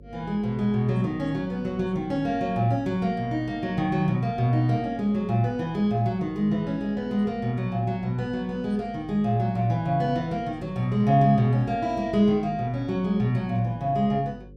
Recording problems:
hum; 50 Hz, harmonics up to 550 Hz, SNR 23 dB

